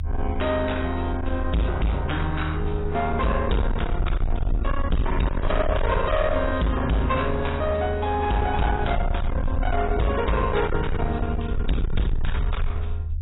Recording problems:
codec artefacts; AAC, log-spectral distance 3 dB, nothing above 3.8 kHz
distorted audio; soft clipping, signal-to-distortion ratio 6 dB
low-frequency rumble; below 80 Hz, SNR 3 dB

